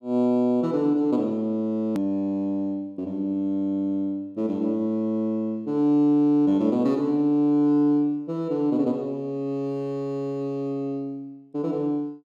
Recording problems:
hard cut with a click; at 2 s

